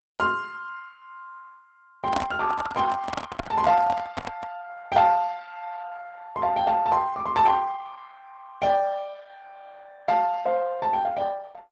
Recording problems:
codec artefacts; Opus, log-spectral distance 4 dB, nothing above 8 kHz
microphone handling noise; from 2 to 4.5 s; peak +1 dB vs average level

